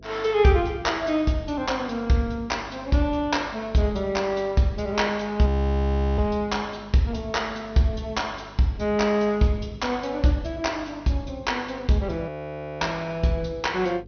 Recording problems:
low-pass filter; nothing above 6.2 kHz
hum; 50 Hz, harmonics up to 500 Hz, SNR 23 dB
frozen audio; at 5.5 s for 0.5 s and at 12 s for 0.5 s

